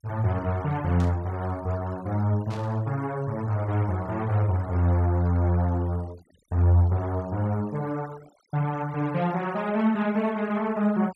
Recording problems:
noise reduction artefacts; signal-to-artefact ratio 23 dB
static burst; at 1 s and at 2.5 s; peak -15 dB vs average level

